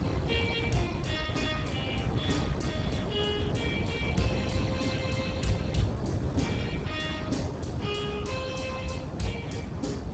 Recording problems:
codec artefacts; Speex, log-spectral distance 4 dB, nothing above 7.8 kHz
low-frequency rumble; below 150 Hz, SNR 11 dB
wind on the microphone; below 430 Hz, SNR 0 dB

